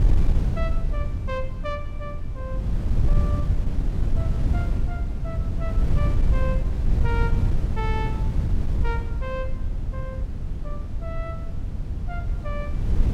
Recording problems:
wind noise; below 94 Hz, SNR -10 dB

